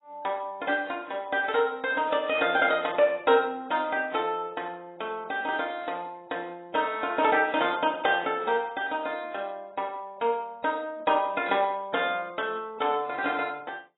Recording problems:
lossy codec; AAC, log-spectral distance 4 dB, nothing above 3.6 kHz

